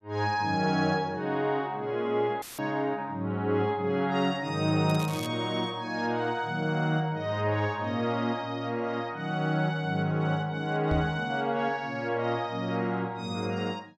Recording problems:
audio cutting out; at 2.5 s; filled with static
crackling; at 5 s; loose cable, SNR 15 dB
microphone bump; at 11 s; peak +2 dB vs average level

